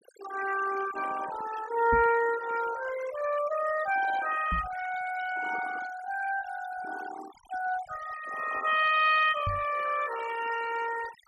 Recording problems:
noise reduction artefacts; signal-to-artefact ratio 13 dB
microphone bump; at 2 s, at 4.5 s and at 9.5 s; peak -1 dB vs average level

